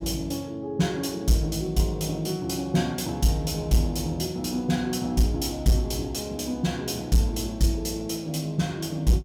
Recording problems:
distorted audio; hard clipping, signal-to-distortion ratio 12 dB

